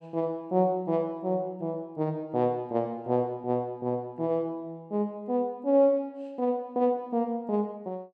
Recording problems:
none

